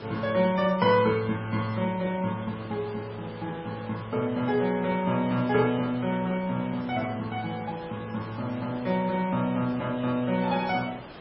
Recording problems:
lossy compression; MP3, log-spectral distance 6 dB, nothing above 4.6 kHz
hiss; SNR 16 dB

